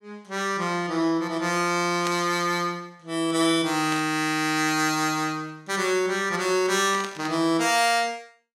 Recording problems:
burst of static; at 2 s, at 4 s and at 7 s; peak -4 dB vs average level

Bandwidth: 16 kHz